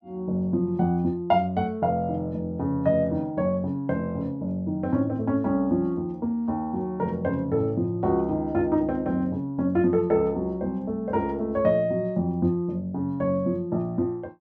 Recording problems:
none

